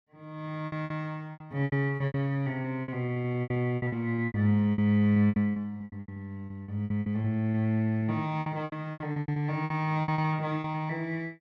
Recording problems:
packet loss; 19% of the sound replaced, filled with repeated pitch periods

